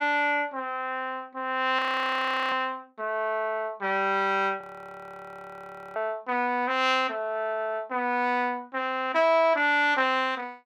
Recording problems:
frozen audio; at 2 s for 0.5 s and at 4.5 s for 1.5 s

